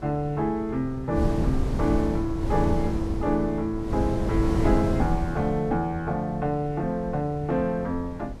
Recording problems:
wind on the microphone; below 170 Hz, SNR 5 dB

